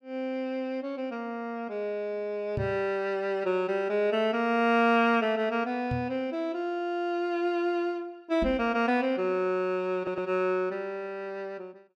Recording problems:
microphone bump; at 2.5 s, at 6 s and at 8.5 s; peak -1 dB vs average level
stutter; at 10 s

